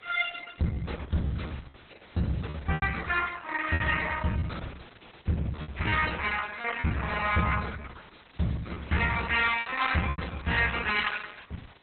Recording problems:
lossy compression; Vorbis, then Opus, log-spectral distance 11 dB, nothing above 4 kHz
distorted audio; soft clipping, signal-to-distortion ratio 11 dB
hiss; SNR 26 dB
lost packets; 7% of the sound replaced, filled with repeated pitch periods

